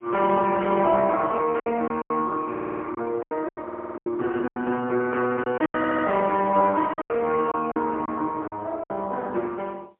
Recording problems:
telephone audio; 260 Hz to 3.2 kHz, AMR-NB, then MP3
packet loss; 10% of the sound replaced, filled with silence
stutter; at 2.5 s, at 3.5 s and at 6 s

